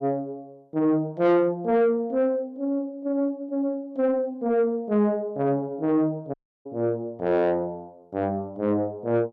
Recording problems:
distortion; soft clipping, signal-to-distortion ratio 11 dB
dropout; at 6.5 s

